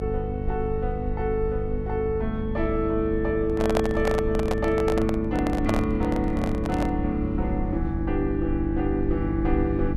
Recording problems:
hum; 50 Hz, harmonics up to 600 Hz, SNR 6 dB
low-frequency rumble; below 68 Hz, SNR 8 dB
microphone handling noise; from 3.5 to 7 s; peak +5 dB vs average level

